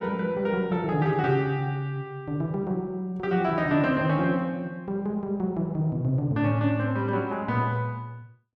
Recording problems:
none

